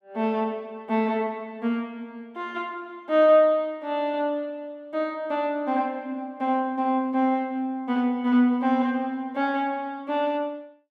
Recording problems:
none

